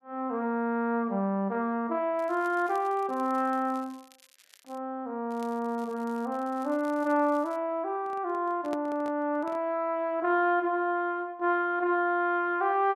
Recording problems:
crackle; from 2 to 5 s and from 5.5 to 7.5 s; loose cable, SNR 28 dB
microphone handling noise; from 8 to 9.5 s; peak -6 dB vs average level

